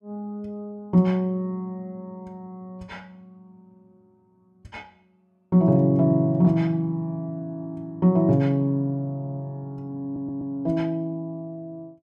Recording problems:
audio stuttering; at 9 s and at 10 s

